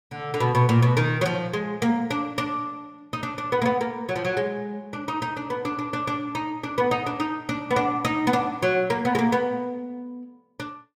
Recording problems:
none

